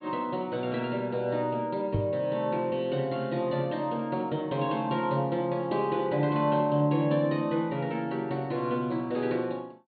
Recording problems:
low-pass filter; nothing above 4.5 kHz
microphone thump; at 2 s; peak +3 dB vs average level

